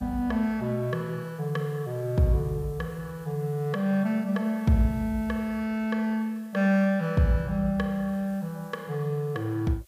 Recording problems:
background hiss; slope +1 dB per octave, SNR 29 dB

